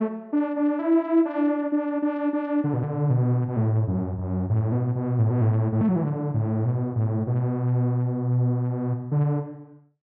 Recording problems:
none

